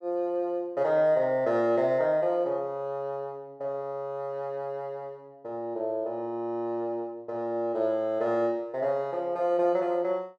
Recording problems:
none

